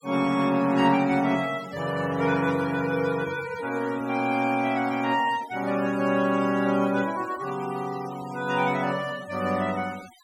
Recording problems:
denoising artefacts; signal-to-artefact ratio 17 dB

